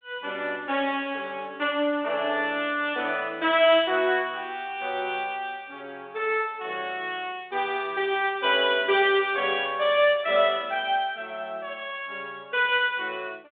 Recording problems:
phone line; 170 Hz to 3.7 kHz, G.726

